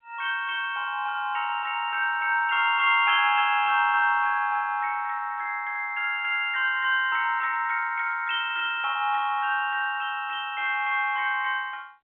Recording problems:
phone line; 150 Hz to 3.7 kHz, G.711

